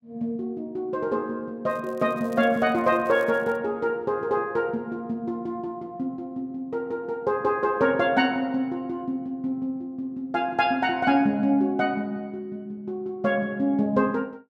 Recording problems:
crackling; from 1.5 to 3.5 s; loose cable, SNR 29 dB

